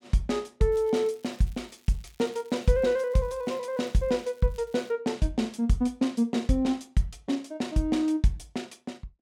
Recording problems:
crackle; from 0.5 to 5 s; loose cable, SNR 30 dB

